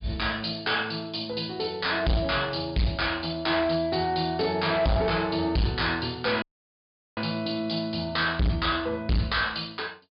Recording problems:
treble missing; nothing above 5.1 kHz
distortion; hard clipping, uneven, signal-to-distortion ratio 7 dB
dropout; at 6.5 s for 1 s

